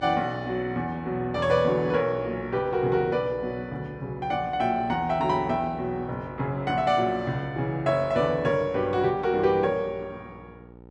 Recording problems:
hum; 60 Hz, harmonics up to 1 kHz, SNR 20 dB

